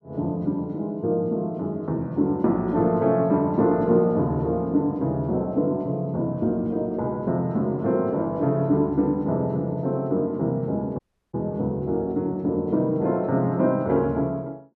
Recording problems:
dropout; at 11 s

